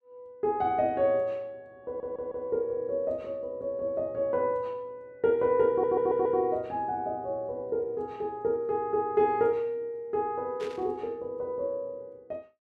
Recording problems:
audio stuttering; at 2 s and at 5.5 s
burst of static; at 11 s; peak -11 dB vs average level

